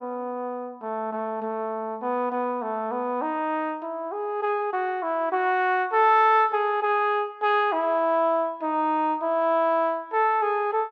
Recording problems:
none

